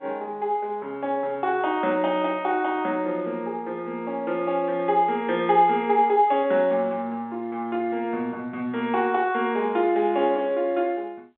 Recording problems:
phone line; 280 Hz to 3.8 kHz, G.711

